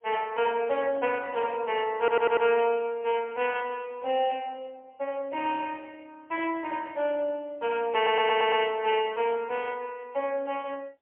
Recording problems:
phone line; 300 Hz to 3.2 kHz, AMR-NB, then MP3
audio stuttering; at 2 s and at 8 s

